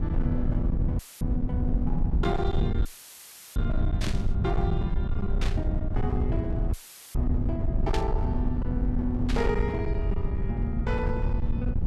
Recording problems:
distorted audio; hard clipping, uneven, signal-to-distortion ratio 10 dB
rumble; below 110 Hz, SNR -3 dB
audio cutting out; at 1 s, at 3 s for 0.5 s and at 6.5 s; filled with static
static burst; 4 times, first at 4 s; peak +2 dB vs average level

